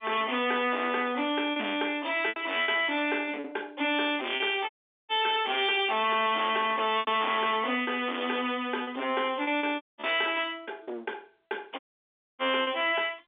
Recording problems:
telephone audio; 220 Hz to 3.6 kHz, G.711
distorted audio; hard clipping, uneven, signal-to-distortion ratio 5 dB
lost packets; 5% of the sound replaced, filled with repeated pitch periods
dropout; at 4.5 s, at 10 s and at 12 s for 0.5 s

